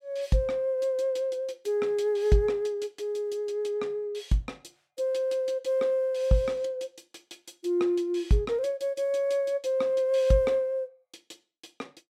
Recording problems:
none

